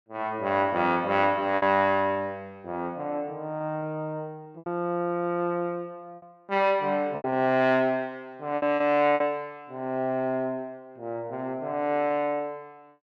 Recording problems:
packet loss; 5% of the sound replaced, filled with repeated pitch periods

